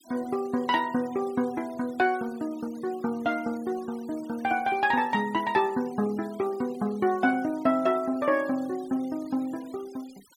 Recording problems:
denoising artefacts; signal-to-artefact ratio 23 dB

